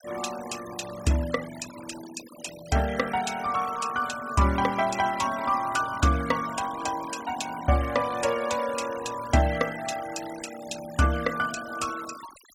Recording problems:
noise reduction artefacts; signal-to-artefact ratio 14 dB

